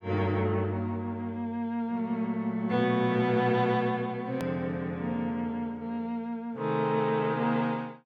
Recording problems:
hard cut with a click; at 4.5 s

